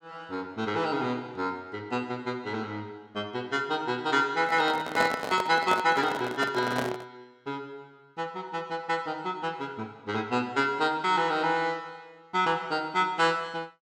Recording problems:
microphone handling noise; from 4.5 to 7 s; peak +2 dB vs average level

